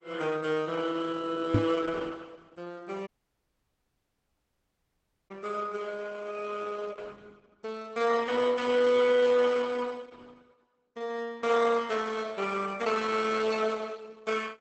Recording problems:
codec artefacts; Opus, log-spectral distance 4 dB, nothing above 8.2 kHz
microphone bump; at 1.5 s; peak +8 dB vs average level
audio cutting out; at 3 s for 2 s

